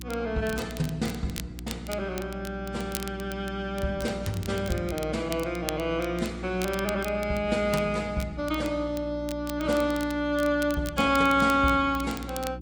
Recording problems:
lossy codec; AAC, log-spectral distance 2 dB
hum; 60 Hz, harmonics up to 360 Hz, SNR 12 dB
crackle; vinyl, SNR 15 dB

